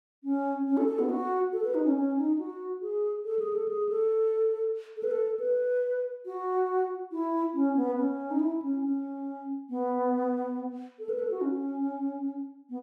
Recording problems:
none

